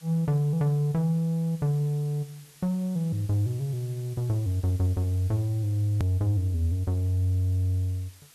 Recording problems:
background hiss; slope +1 dB per octave, SNR 25 dB
click at an edit; at 6 s

